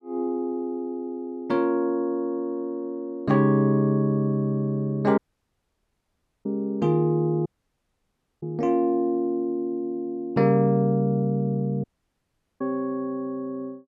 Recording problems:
audio cutting out; at 5 s for 1.5 s, at 7.5 s for 1 s and at 12 s for 1 s

